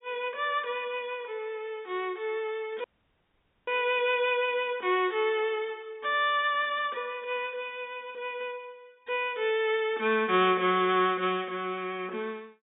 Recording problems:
low-pass filter; nothing above 4 kHz
dropout; at 3 s for 1 s

